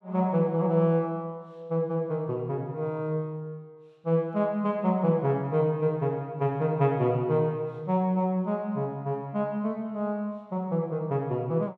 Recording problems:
none

